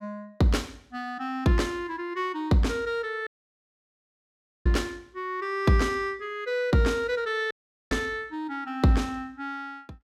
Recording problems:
dropout; at 3.5 s for 1.5 s and at 7.5 s

